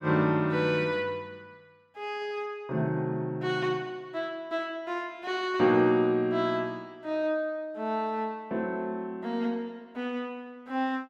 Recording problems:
none

